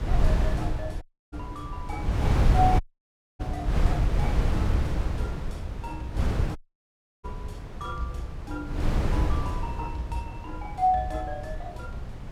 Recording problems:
wind on the microphone; below 130 Hz, SNR -4 dB
audio cutting out; at 1 s, at 3 s for 0.5 s and at 6.5 s for 0.5 s

